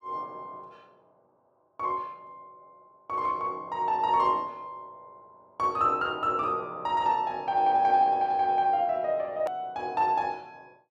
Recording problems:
click at an edit; at 9.5 s

